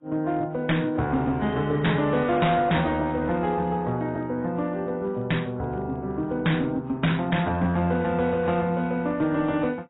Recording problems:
lossy codec; AAC, log-spectral distance 2 dB, nothing above 3.8 kHz
distortion; hard clipping, uneven, signal-to-distortion ratio 11 dB

